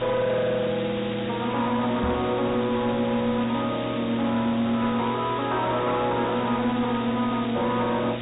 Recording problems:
low-pass filter; nothing above 4 kHz
distorted audio; soft clipping, signal-to-distortion ratio 8 dB
mains hum; 60 Hz, harmonics up to 840 Hz, SNR 15 dB
hiss; SNR 8 dB
knock on the microphone; at 2 s; peak +2 dB vs average level

